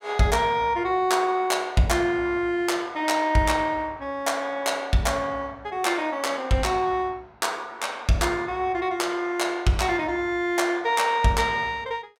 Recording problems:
none

